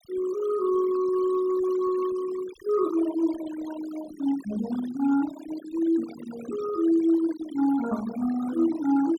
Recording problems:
denoising artefacts; signal-to-artefact ratio 15 dB

